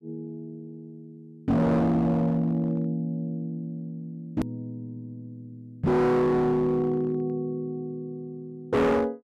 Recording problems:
distorted audio; hard clipping, signal-to-distortion ratio 7 dB
hard cut with a click; at 4.5 s

